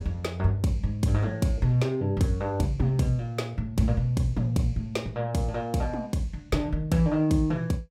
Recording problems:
none

